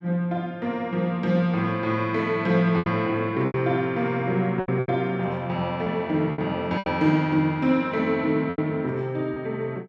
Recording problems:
packet loss; 6% of the sound replaced, filled with repeated pitch periods

